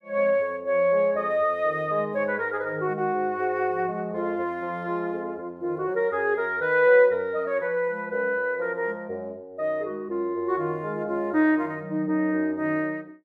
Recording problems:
none

